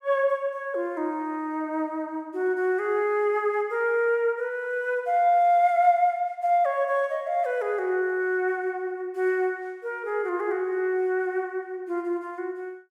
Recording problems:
none

